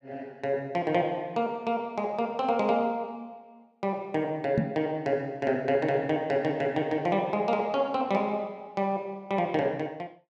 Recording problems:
microphone bump; at 4.5 s; peak +6 dB vs average level

